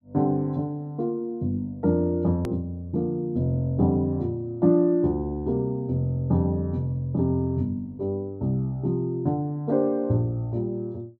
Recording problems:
edit click; at 2.5 s

